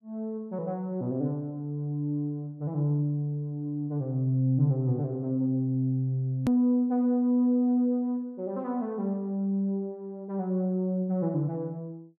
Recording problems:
hard cut with a click; at 6.5 s

